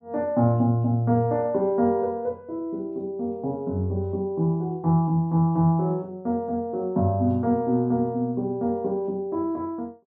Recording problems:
none

